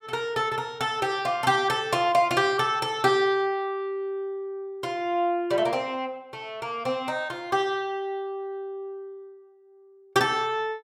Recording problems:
none

